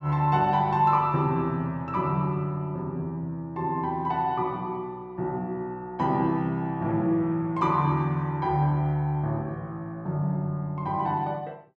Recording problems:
none

